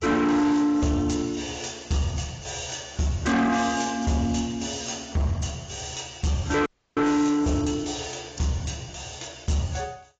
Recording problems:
lossy codec; AAC, log-spectral distance 7 dB, nothing above 7.3 kHz
distortion; soft clipping, signal-to-distortion ratio 10 dB
audio freezing; at 6.5 s

